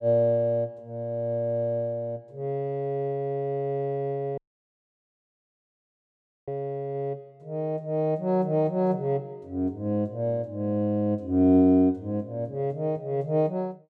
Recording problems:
audio cutting out; at 4.5 s for 2 s

